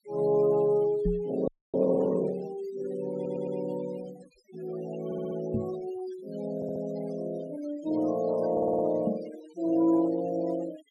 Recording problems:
noise reduction artefacts; signal-to-artefact ratio 18 dB
microphone thump; at 1 s, at 5.5 s and at 9 s; peak +3 dB vs average level
audio freezing; at 1.5 s
stutter; 4 times, first at 3 s

